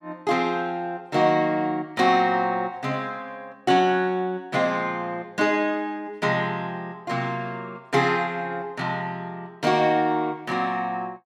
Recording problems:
none

